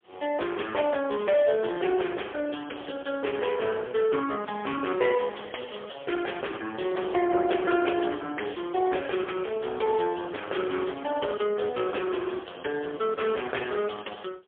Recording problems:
telephone audio; 300 Hz to 3.3 kHz, AMR-NB, then MP3

